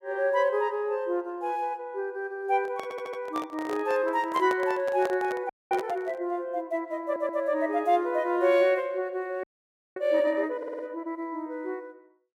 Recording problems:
handling noise; from 2.5 to 6.5 s; peak -2 dB vs average level
stutter; at 3 s, at 7 s and at 11 s
audio freezing; at 5.5 s and at 9.5 s for 0.5 s

